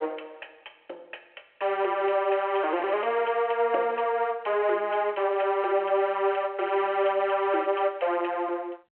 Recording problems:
phone line; 280 Hz to 3.2 kHz, G.726

